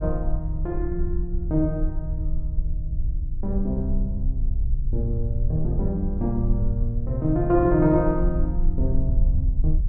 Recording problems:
low-frequency rumble; below 58 Hz, SNR 2 dB

